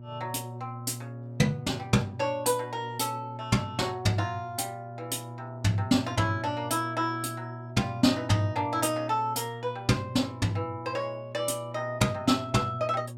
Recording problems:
electrical hum; 60 Hz, harmonics up to 600 Hz, SNR 13 dB

